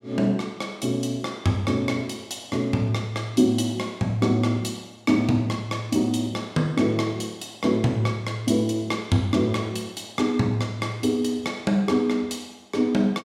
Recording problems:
none

